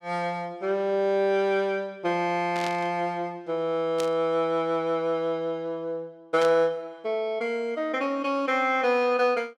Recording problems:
burst of static; at 2.5 s, at 4 s and at 6.5 s; peak -5 dB vs average level

